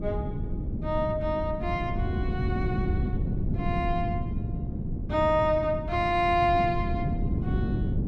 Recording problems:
wind noise; below 200 Hz, SNR 3 dB

